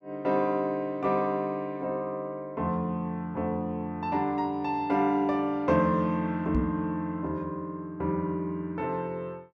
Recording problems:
knock on the microphone; at 6.5 s; peak +5 dB vs average level

